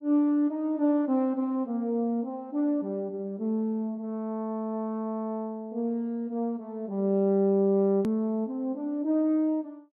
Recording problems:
edit click; at 8 s

